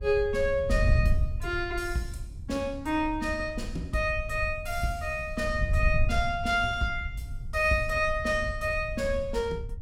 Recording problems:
wind on the microphone; below 84 Hz, SNR 6 dB

